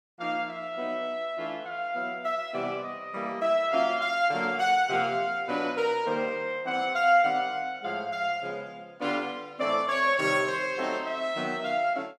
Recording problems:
none

